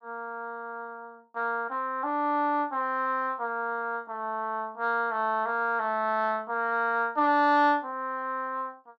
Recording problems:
none

